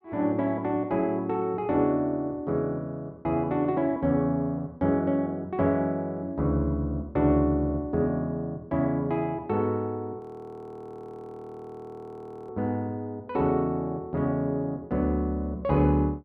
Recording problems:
frozen audio; at 10 s for 2.5 s

